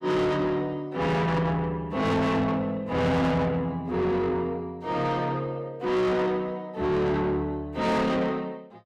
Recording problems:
distorted audio; soft clipping, signal-to-distortion ratio 7 dB

